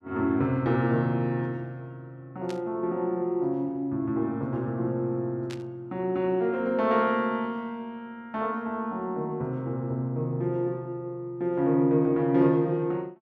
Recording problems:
static burst; at 2.5 s and at 5.5 s; peak -11 dB vs average level

